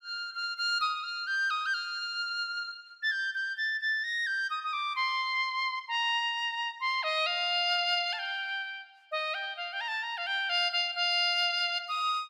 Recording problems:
none

